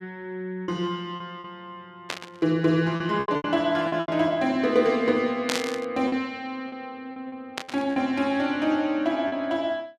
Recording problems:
packet loss; 7% of the sound replaced, filled with repeated pitch periods
burst of static; at 2 s, at 5.5 s and at 7.5 s; peak +2 dB vs average level

